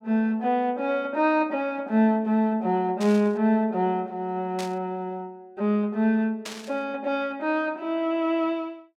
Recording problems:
burst of static; at 3 s, at 4.5 s and at 6.5 s; peak -6 dB vs average level

